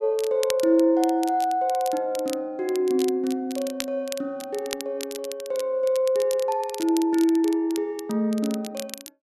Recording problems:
crackle; vinyl, SNR 15 dB

